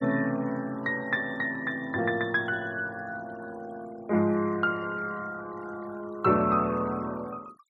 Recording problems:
noise reduction artefacts; signal-to-artefact ratio 23 dB

